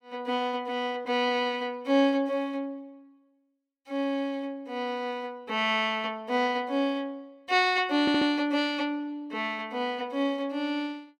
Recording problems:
stutter; at 8 s

